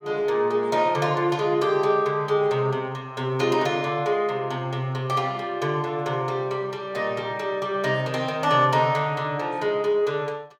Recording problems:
none

